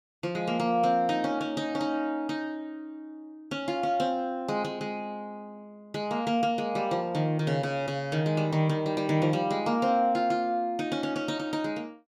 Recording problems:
none

